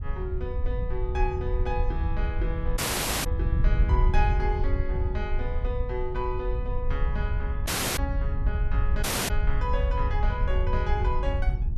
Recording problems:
wind on the microphone; below 70 Hz, SNR -5 dB
audio cutting out; at 3 s, at 7.5 s and at 9 s

